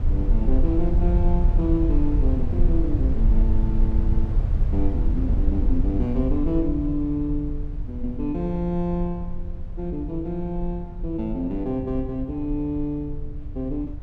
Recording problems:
low-frequency rumble; below 66 Hz, SNR -1 dB

